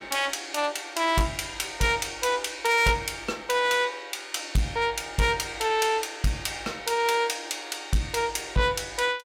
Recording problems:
distortion; soft clipping, signal-to-distortion ratio 12 dB

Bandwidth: 16.5 kHz